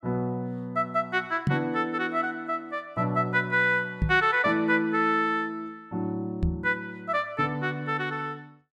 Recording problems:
microphone bump; at 1.5 s, at 4 s and at 6.5 s; peak +4 dB vs average level

